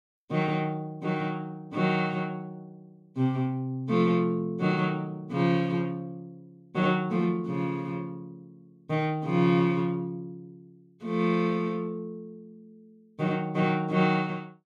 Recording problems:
none

